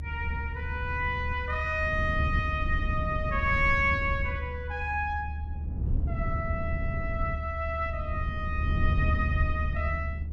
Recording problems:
rumble; below 110 Hz, SNR 1 dB

